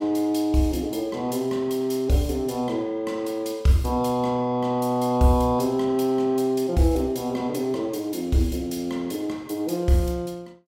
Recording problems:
none

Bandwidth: 16.5 kHz